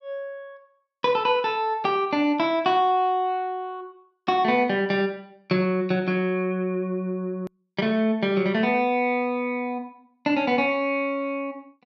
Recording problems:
hard cut with a click; at 7.5 s

